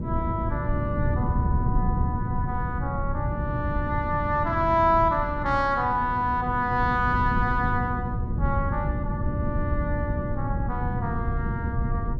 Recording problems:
electrical hum; 60 Hz, harmonics up to 1.1 kHz, SNR 13 dB
wind noise; below 150 Hz, SNR 2 dB

